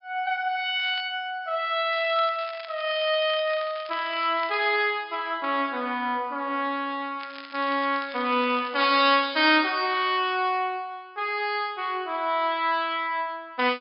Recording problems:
treble missing; nothing above 5.5 kHz
crackle; at 1 s, from 2 to 4.5 s and from 7 to 9.5 s; loose cable, SNR 19 dB

